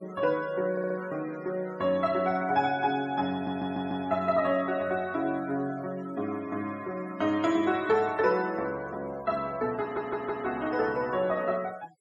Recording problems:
noise reduction artefacts; signal-to-artefact ratio 21 dB
stutter; at 0.5 s, at 3.5 s and at 10 s

